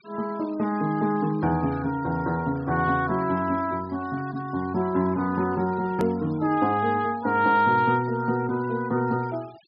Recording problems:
low-pass filter; nothing above 5.5 kHz
noise reduction artefacts; signal-to-artefact ratio 24 dB
hard cut with a click; at 6 s

